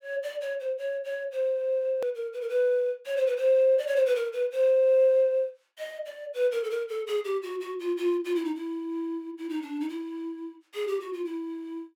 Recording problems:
edit click; at 2 s

